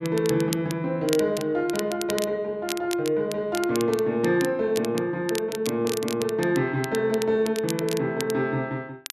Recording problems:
crackling; vinyl, SNR 12 dB

